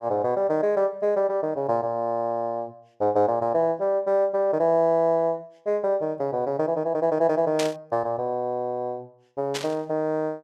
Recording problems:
burst of static; at 7.5 s and at 9.5 s; peak -1 dB vs average level

